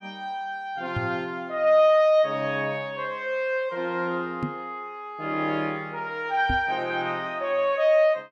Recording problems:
knock on the microphone; at 1 s, at 4.5 s and at 6.5 s; peak 0 dB vs average level

